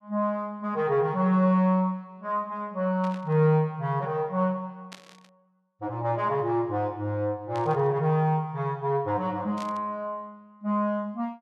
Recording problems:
static burst; 4 times, first at 3 s; peak -11 dB vs average level

